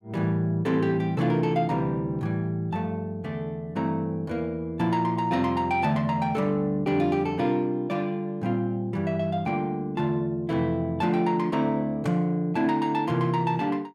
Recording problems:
none

